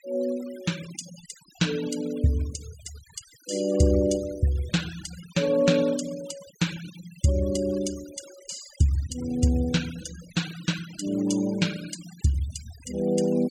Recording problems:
noise reduction artefacts; signal-to-artefact ratio 17 dB

